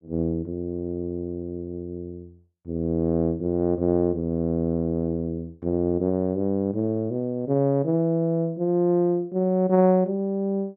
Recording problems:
none

